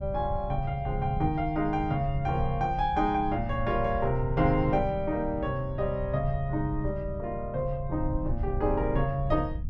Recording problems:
rumble; below 88 Hz, SNR 7 dB

